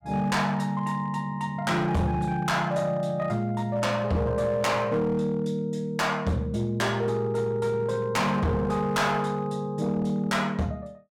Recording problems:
distorted audio; hard clipping, uneven, signal-to-distortion ratio 10 dB

